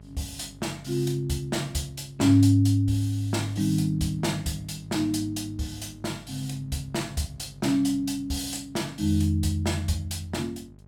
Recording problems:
hum; 50 Hz, harmonics up to 850 Hz, SNR 23 dB

